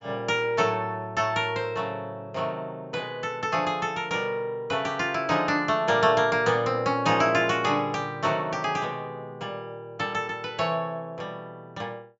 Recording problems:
treble cut off; nothing above 8 kHz

